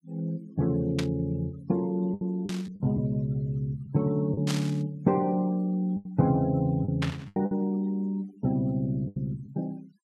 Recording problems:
noise reduction artefacts; signal-to-artefact ratio 27 dB
lost packets; 5% of the sound replaced, filled with the last packet
burst of static; 4 times, first at 1 s; peak -1 dB vs average level

